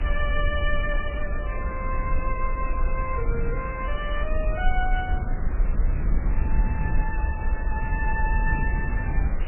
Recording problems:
lossy compression; MP3, log-spectral distance 3 dB, nothing above 2.7 kHz
background hiss; SNR 8 dB
low-frequency rumble; below 50 Hz, SNR -2 dB
wind on the microphone; below 160 Hz, SNR 4 dB

